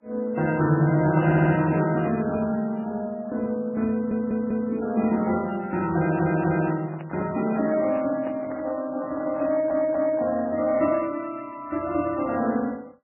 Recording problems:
lossy codec; MP3, then Vorbis, log-spectral distance 3 dB, nothing above 2.4 kHz
stutter; 4 times, first at 1 s
crackle; at 2 s; loose cable, SNR 27 dB
handling noise; from 7 to 11 s; peak -9 dB vs average level

